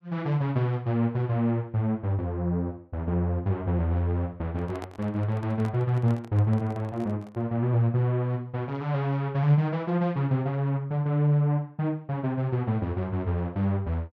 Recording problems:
microphone handling noise; from 4.5 to 7.5 s; peak -8 dB vs average level

